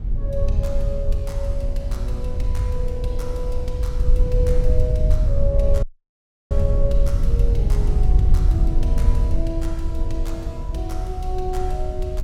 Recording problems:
low-frequency rumble; below 66 Hz, SNR -7 dB
audio cutting out; at 6 s for 0.5 s

